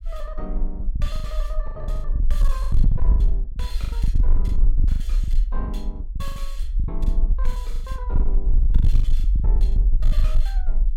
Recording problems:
distorted audio; hard clipping, signal-to-distortion ratio 10 dB
rumble; below 46 Hz, strongest tone 22 Hz, SNR -13 dB
packet loss; 19% of the sound replaced, filled with the last packet

